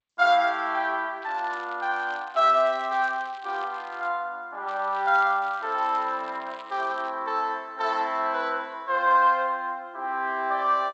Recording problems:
codec artefacts; G.722, log-spectral distance 3 dB, nothing above 7.8 kHz
crackle; from 1 to 4 s and from 4.5 to 7 s; loose cable, SNR 25 dB

